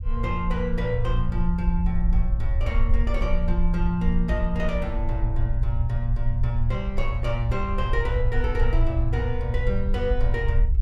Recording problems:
low-frequency rumble; below 60 Hz, strongest tone 22 Hz, SNR -1 dB

